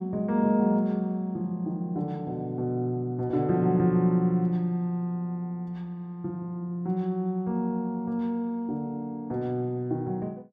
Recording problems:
none

